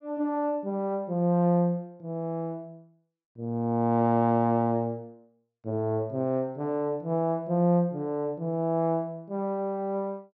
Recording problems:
treble missing; nothing above 8 kHz

